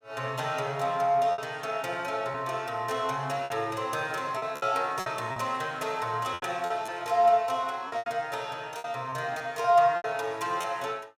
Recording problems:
lost packets; 7% of the sound replaced, filled with repeated pitch periods

